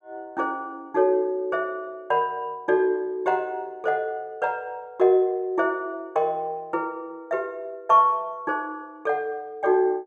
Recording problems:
none

